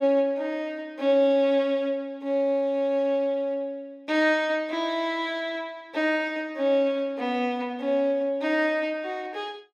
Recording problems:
none

